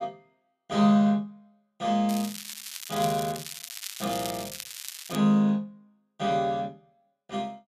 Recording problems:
crackle; from 2 to 5 s; loose cable, SNR 10 dB

